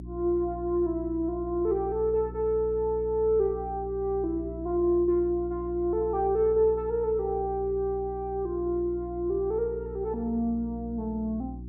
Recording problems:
electrical hum; 60 Hz, harmonics up to 360 Hz, SNR 13 dB

